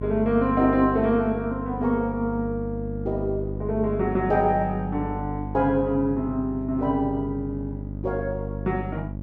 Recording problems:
electrical hum; 50 Hz, harmonics up to 600 Hz, SNR 8 dB

